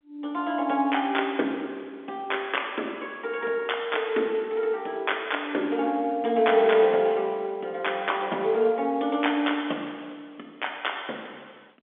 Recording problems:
phone line; 240 Hz to 3.6 kHz, G.711

